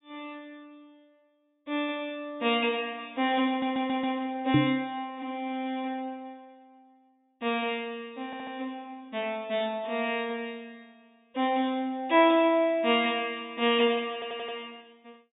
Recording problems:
treble cut off; nothing above 4 kHz
audio stuttering; at 3.5 s, at 8.5 s and at 14 s
knock on the microphone; at 4.5 s; peak +9 dB vs average level

